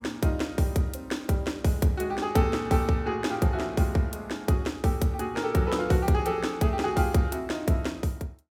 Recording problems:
none

